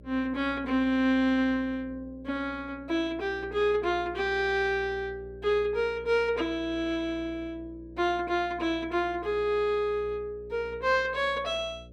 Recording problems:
electrical hum; 60 Hz, harmonics up to 600 Hz, SNR 20 dB

